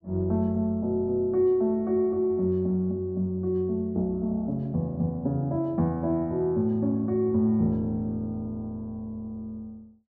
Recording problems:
none

